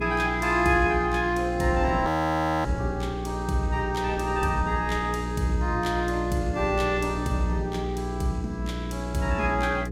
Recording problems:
mains hum; 60 Hz, harmonics up to 480 Hz, SNR 6 dB
wind on the microphone; below 480 Hz, SNR 17 dB
frozen audio; at 2 s for 0.5 s

